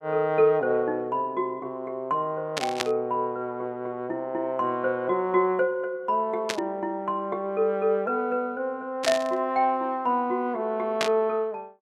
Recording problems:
burst of static; 4 times, first at 2.5 s; peak +4 dB vs average level

